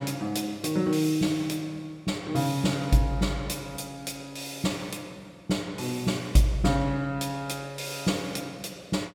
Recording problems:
none

